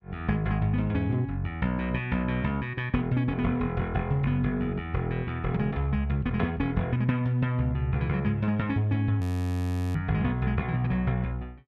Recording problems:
audio freezing; at 9 s for 0.5 s

